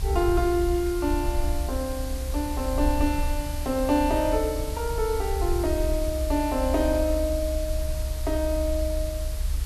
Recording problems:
background hiss; slope -1 dB per octave, SNR 12 dB
low-frequency rumble; below 66 Hz, SNR 4 dB

